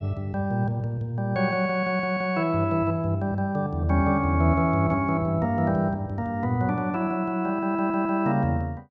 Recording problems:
audio stuttering; at 8 s

